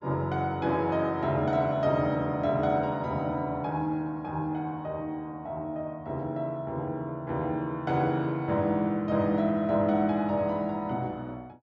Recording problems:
treble missing; nothing above 8 kHz

